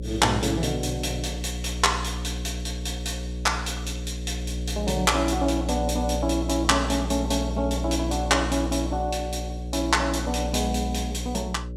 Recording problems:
hum; 60 Hz, harmonics up to 600 Hz, SNR 5 dB

